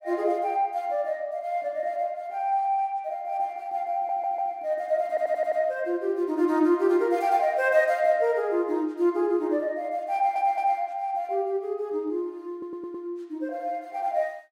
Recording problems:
audio stuttering; 4 times, first at 4 s

